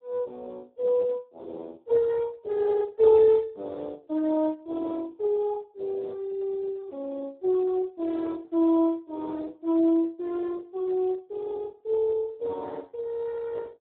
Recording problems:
telephone audio; 240 Hz to 2.2 kHz, Speex

